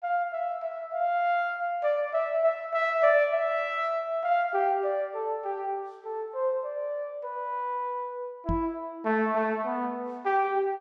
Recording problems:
knock on the microphone; at 8.5 s; peak +1 dB vs average level

